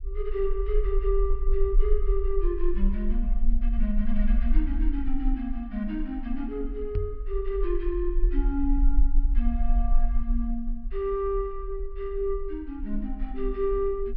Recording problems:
low-pass filter; nothing above 5.5 kHz
low-frequency rumble; below 40 Hz, strongest tone 24 Hz, SNR -1 dB
microphone bump; at 7 s; peak +5 dB vs average level

